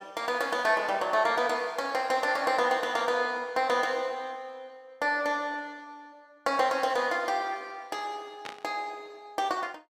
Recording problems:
static burst; at 8.5 s; peak -7 dB vs average level

